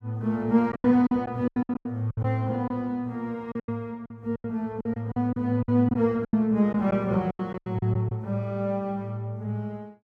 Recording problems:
lost packets; 12% of the sound replaced, filled with silence

